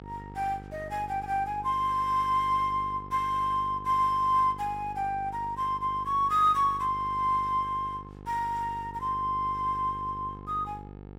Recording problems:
electrical hum; 50 Hz, harmonics up to 1.4 kHz, SNR 16 dB

